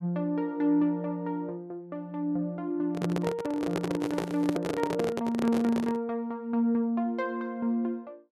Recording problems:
microphone handling noise; from 3 to 6 s; peak +3 dB vs average level
crackling; at 4 s; loose cable, SNR 27 dB

